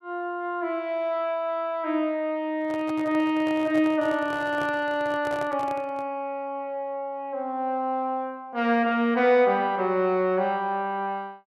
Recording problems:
handling noise; from 2.5 to 6 s; peak -7 dB vs average level

